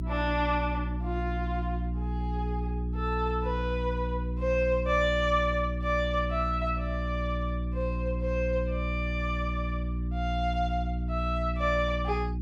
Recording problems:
hum; 60 Hz, harmonics up to 360 Hz, SNR 2 dB

